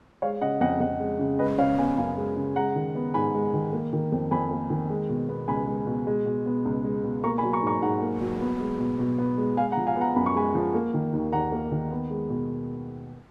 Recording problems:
wind noise; below 1.1 kHz, SNR 23 dB

